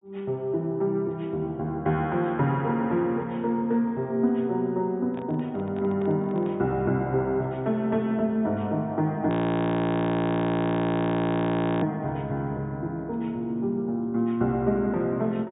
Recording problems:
treble cut off; nothing above 4 kHz
microphone handling noise; from 5 to 6.5 s; peak -12 dB vs average level
audio freezing; at 9.5 s for 2.5 s

